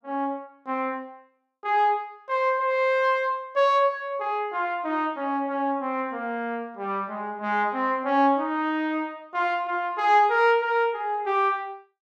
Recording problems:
none

